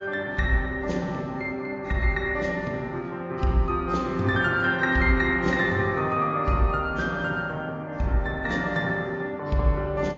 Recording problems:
lossy codec; AAC, log-spectral distance 2 dB

